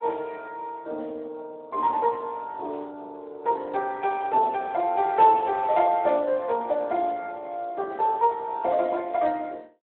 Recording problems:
telephone audio; 320 Hz to 3.6 kHz, Speex

